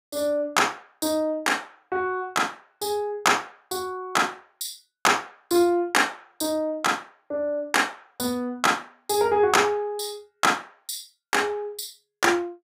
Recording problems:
none

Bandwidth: 15.5 kHz